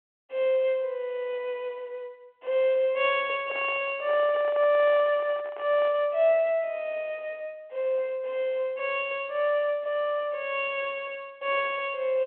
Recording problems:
telephone audio; 300 Hz to 3.3 kHz, G.726
handling noise; from 3.5 to 6 s; peak -11 dB vs average level

